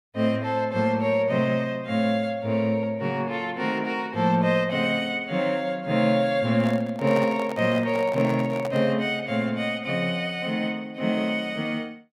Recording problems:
handling noise; from 6.5 to 9 s; peak -5 dB vs average level

